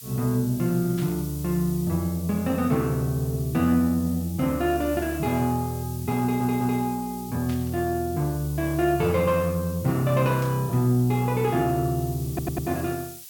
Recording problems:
background hiss; slope +5 dB per octave, SNR 16 dB
static burst; at 1 s, at 7.5 s and at 10 s; peak -13 dB vs average level
audio stuttering; at 6 s and at 12 s

